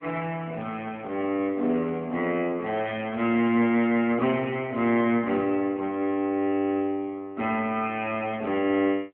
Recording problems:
telephone audio; 190 Hz to 3.2 kHz, AMR-NB

